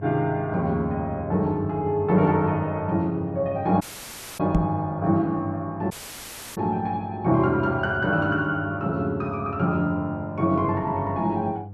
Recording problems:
electrical hum; 50 Hz, harmonics up to 700 Hz, SNR 14 dB
dropout; at 4 s for 0.5 s and at 6 s for 0.5 s
knock on the microphone; at 4.5 s; peak +6 dB vs average level

